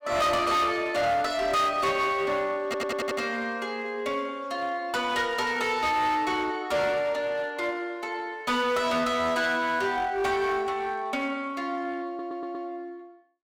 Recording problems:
distortion; hard clipping, uneven, signal-to-distortion ratio 9 dB
stutter; at 2.5 s and at 12 s

